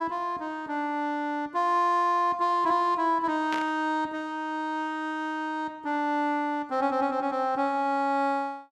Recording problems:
burst of static; at 3.5 s; peak -3 dB vs average level

